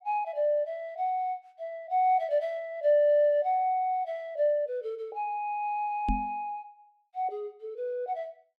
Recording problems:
microphone thump; at 6 s; peak +2 dB vs average level

